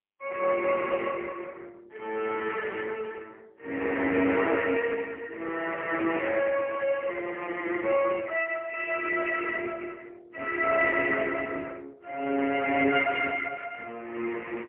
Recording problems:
phone line; 240 Hz to 2.8 kHz, AMR-NB, then MP3

